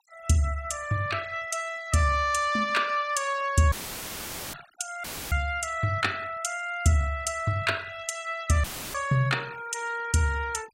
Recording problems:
noise reduction artefacts; signal-to-artefact ratio 21 dB
audio cutting out; at 3.5 s for 1 s, at 5 s and at 8.5 s; filled with static

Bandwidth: 16 kHz